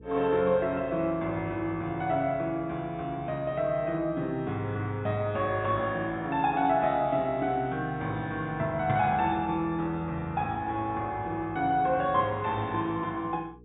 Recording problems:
treble missing; nothing above 4 kHz
hum; 60 Hz, harmonics up to 480 Hz, SNR 22 dB

